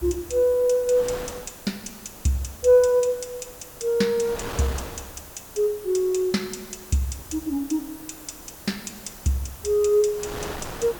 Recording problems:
background hiss; SNR 19 dB
wind on the microphone; below 1.8 kHz, SNR 17 dB

